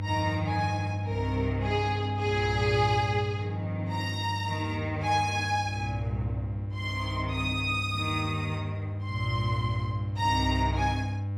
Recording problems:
electrical hum; 50 Hz, harmonics up to 500 Hz, SNR 4 dB

